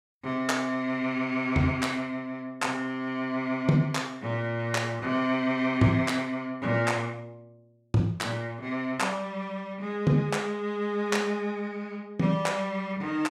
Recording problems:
none

